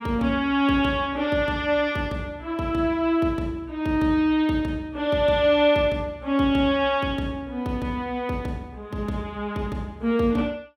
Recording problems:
none

